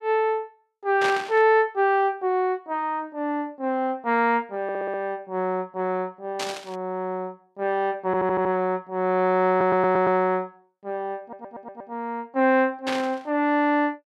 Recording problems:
burst of static; at 1 s, at 6.5 s and at 13 s; peak -1 dB vs average level
stutter; 4 times, first at 4.5 s

